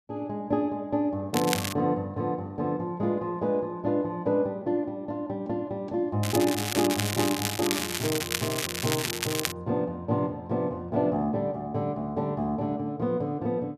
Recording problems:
crackle; at 1.5 s and from 6 to 9.5 s; loose cable, SNR 2 dB

